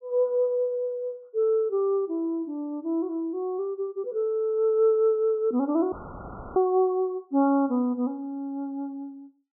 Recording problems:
dropout; at 6 s for 0.5 s; filled with static

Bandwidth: 1.5 kHz